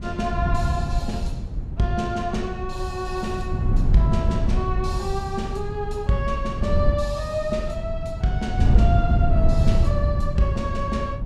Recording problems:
wind noise; below 100 Hz, SNR -2 dB

